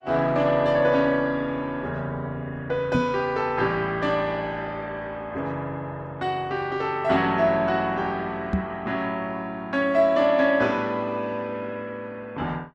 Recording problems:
codec artefacts; Opus, log-spectral distance 2 dB
microphone thump; at 3 s and at 8.5 s; peak +4 dB vs average level

